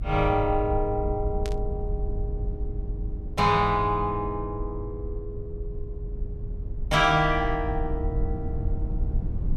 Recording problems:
rumble; below 78 Hz, SNR 7 dB
static burst; at 1.5 s; peak -8 dB vs average level

